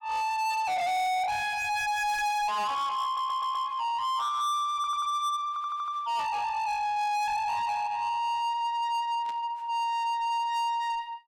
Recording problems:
distortion; soft clipping, signal-to-distortion ratio 7 dB
static burst; at 2 s and at 9.5 s; peak -15 dB vs average level
stutter; at 3 s, at 5 s and at 5.5 s

